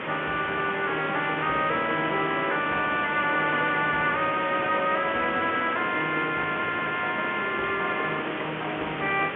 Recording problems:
phone line; 220 Hz to 3.3 kHz, G.711
hiss; SNR 6 dB

